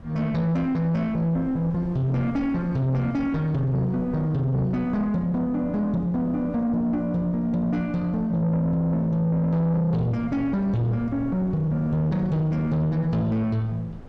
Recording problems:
distortion; soft clipping, signal-to-distortion ratio 10 dB
wind on the microphone; below 320 Hz, SNR 18 dB

